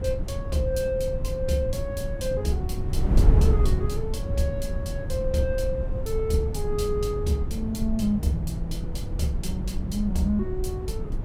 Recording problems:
electrical hum; 50 Hz, harmonics up to 650 Hz, SNR 19 dB
wind noise; below 98 Hz, SNR 0 dB

